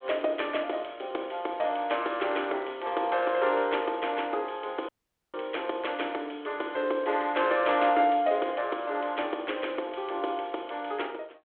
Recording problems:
telephone audio; 300 Hz to 3.4 kHz, G.726
audio cutting out; at 5 s

